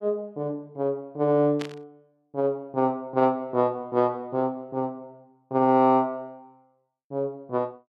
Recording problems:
static burst; at 1.5 s; peak -7 dB vs average level

